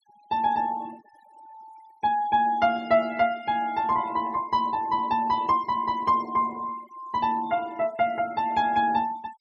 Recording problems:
denoising artefacts; signal-to-artefact ratio 23 dB

